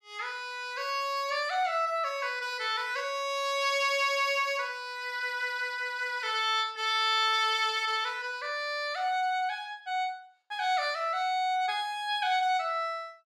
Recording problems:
none

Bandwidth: 14.5 kHz